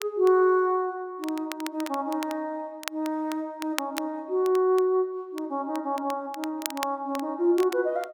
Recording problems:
crackle; vinyl, SNR 13 dB

